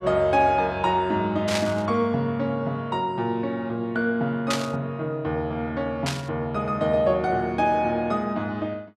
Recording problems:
burst of static; at 1.5 s, at 4.5 s and at 6 s; peak +2 dB vs average level

